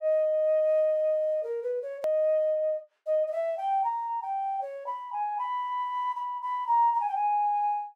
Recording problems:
hard cut with a click; at 2 s

